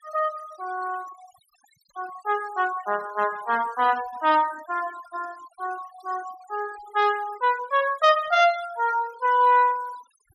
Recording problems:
denoising artefacts; signal-to-artefact ratio 21 dB

